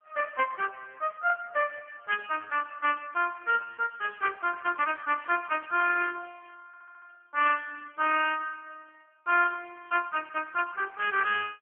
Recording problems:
telephone audio; 320 Hz to 3.1 kHz, AMR-NB
audio stuttering; at 6.5 s

